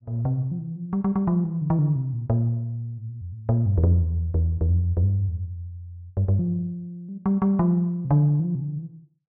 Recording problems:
none

